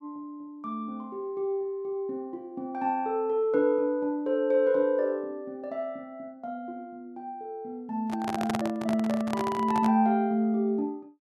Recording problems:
handling noise; from 8 to 10 s; peak +1 dB vs average level

